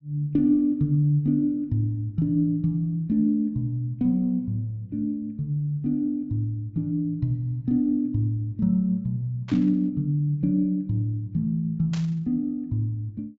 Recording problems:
low-pass filter; nothing above 8 kHz
static burst; at 9.5 s and at 12 s; peak -10 dB vs average level

